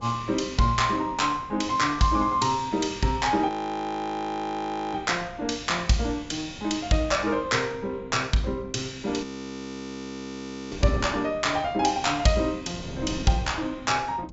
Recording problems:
treble cut off; nothing above 8 kHz
wind noise; below 350 Hz, SNR 17 dB
audio freezing; at 3.5 s for 1.5 s and at 9 s for 1.5 s

